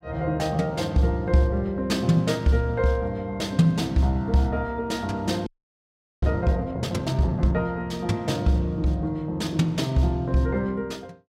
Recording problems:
audio freezing; at 5.5 s for 1 s

